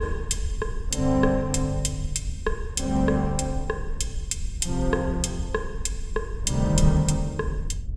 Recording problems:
wind noise; below 70 Hz, SNR 7 dB

